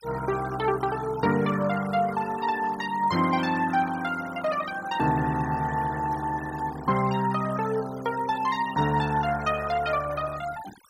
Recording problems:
denoising artefacts; signal-to-artefact ratio 16 dB

